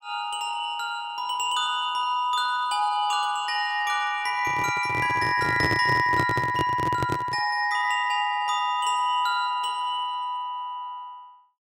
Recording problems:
handling noise; from 4.5 to 7.5 s; peak +1 dB vs average level

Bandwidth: 16 kHz